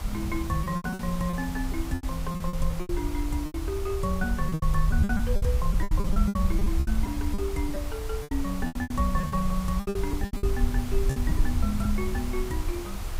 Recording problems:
background hiss; slope -3 dB per octave, SNR 10 dB
rumble; below 68 Hz, SNR 0 dB
wind noise; below 130 Hz, SNR 12 dB
packet loss; 15% of the sound replaced, filled with repeated pitch periods

